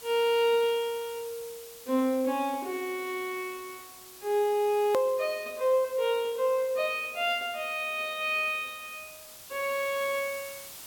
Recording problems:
background hiss; slope 0 dB per octave, SNR 17 dB
click at an edit; at 5 s

